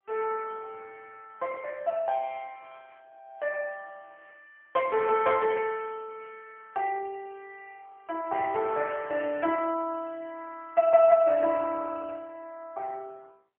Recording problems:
phone line; 300 Hz to 2.6 kHz, AMR-NB

